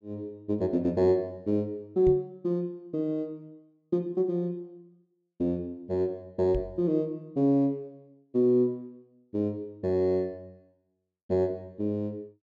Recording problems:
microphone thump; at 2 s and at 6.5 s; peak 0 dB vs average level

